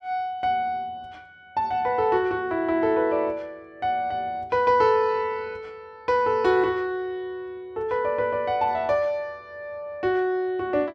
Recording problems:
none

